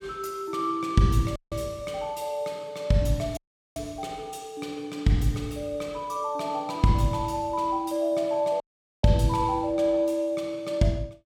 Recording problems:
dropout; at 1.5 s, at 3.5 s and at 8.5 s

